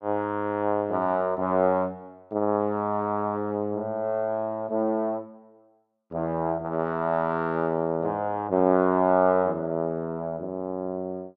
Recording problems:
none

